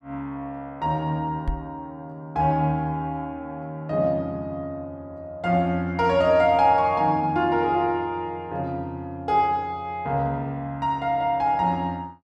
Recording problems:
knock on the microphone; at 1.5 s; peak 0 dB vs average level

